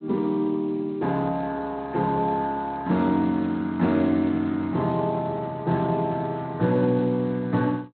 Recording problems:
lossy codec; Speex, log-spectral distance 2 dB, nothing above 4 kHz

